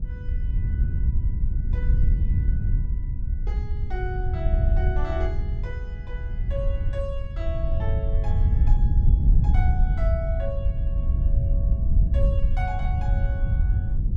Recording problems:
wind noise; below 78 Hz, SNR -12 dB

